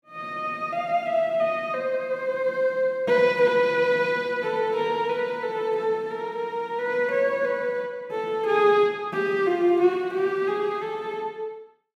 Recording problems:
none

